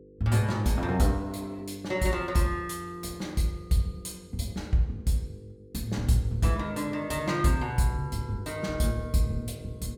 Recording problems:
hum; 50 Hz, harmonics up to 500 Hz, SNR 21 dB

